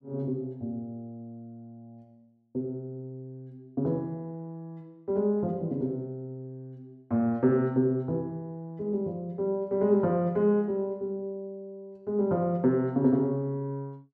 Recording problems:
none

